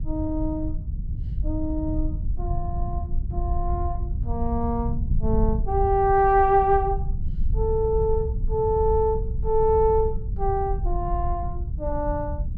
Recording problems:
wind noise; below 80 Hz, SNR 5 dB

